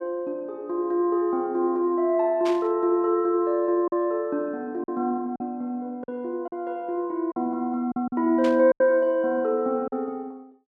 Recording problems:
packet loss; 4% of the sound replaced, filled with silence
static burst; at 2.5 s and at 8.5 s; peak -8 dB vs average level

